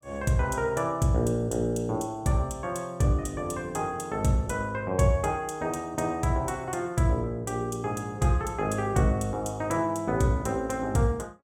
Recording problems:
none

